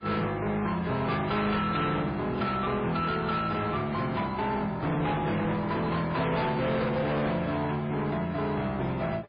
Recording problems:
codec artefacts; MP3, then AAC, log-spectral distance 3 dB, nothing above 4.5 kHz
distortion; hard clipping, signal-to-distortion ratio 8 dB

